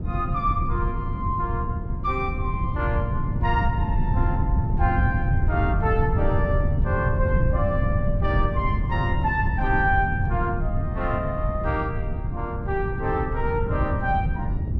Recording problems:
wind noise; below 130 Hz, SNR -1 dB

